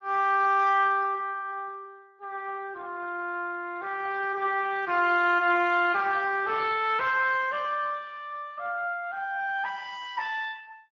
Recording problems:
lossy codec; Speex, log-spectral distance 3 dB

